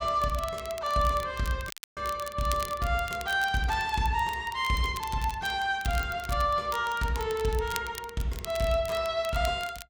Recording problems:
crackling; vinyl, SNR 15 dB
dropout; at 1.5 s

